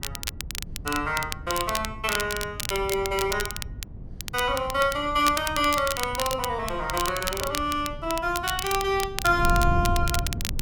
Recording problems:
wind on the microphone; below 120 Hz, SNR 10 dB
crackling; vinyl, SNR 7 dB

